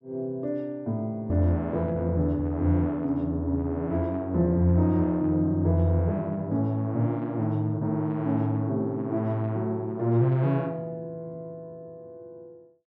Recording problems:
none

